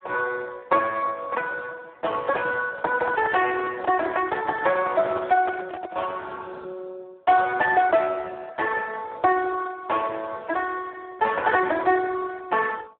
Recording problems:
telephone audio; 300 Hz to 2.6 kHz, Speex
handling noise; from 3 to 6 s; peak -3 dB vs average level

